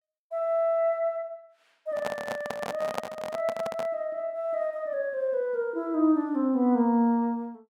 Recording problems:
handling noise; from 2 to 4 s; peak +1 dB vs average level

